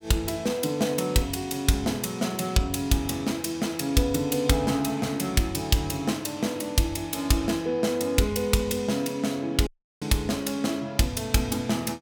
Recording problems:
audio cutting out; at 9.5 s

